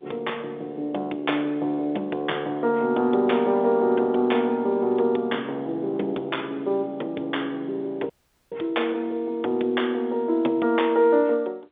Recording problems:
phone line; 260 Hz to 3.6 kHz, G.711
audio cutting out; at 8 s

